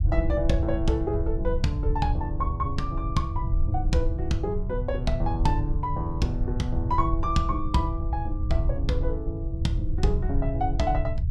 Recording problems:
low-frequency rumble; below 84 Hz, SNR 0 dB

